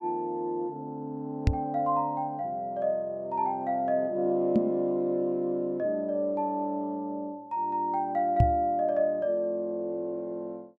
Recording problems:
microphone thump; at 1.5 s, at 4.5 s and at 8.5 s; peak +9 dB vs average level

